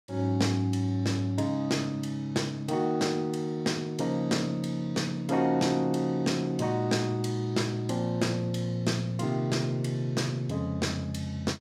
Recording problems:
none

